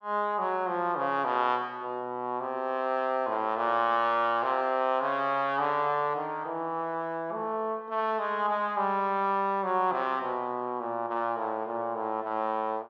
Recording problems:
none

